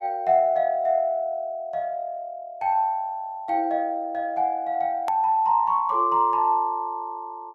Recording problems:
edit click; at 5 s

